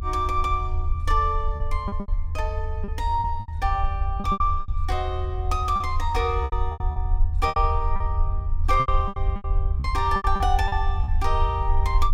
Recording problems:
low-frequency rumble; below 78 Hz, SNR 1 dB
packet loss; 11% of the sound replaced, filled with repeated pitch periods

